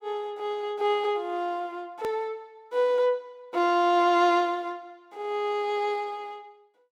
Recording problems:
hard cut with a click; at 2 s

